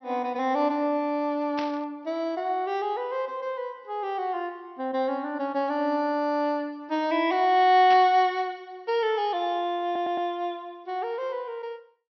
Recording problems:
treble missing; nothing above 5.9 kHz
burst of static; at 1.5 s and at 8 s; peak -6 dB vs average level
stutter; at 10 s

